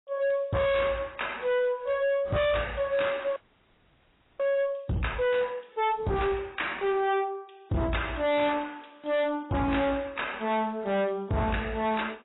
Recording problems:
lossy compression; AAC, log-spectral distance 6 dB, nothing above 3.8 kHz
distortion; hard clipping, signal-to-distortion ratio 6 dB
audio freezing; at 3.5 s for 1 s

